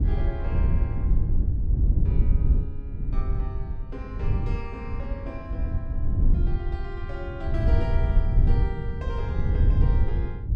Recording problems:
wind on the microphone; below 84 Hz, SNR -12 dB

